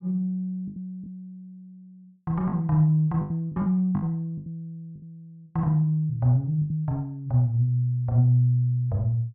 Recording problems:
packet loss; 6% of the sound replaced, filled with the last packet

